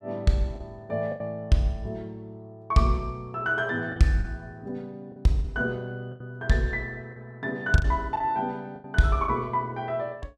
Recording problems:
packet loss; 6% of the sound replaced, filled with the last packet

